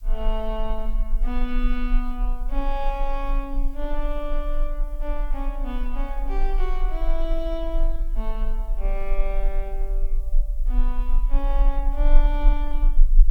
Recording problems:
background hiss; slope +1 dB per octave, SNR 27 dB
low-frequency rumble; below 34 Hz, strongest tone 24 Hz, SNR -6 dB

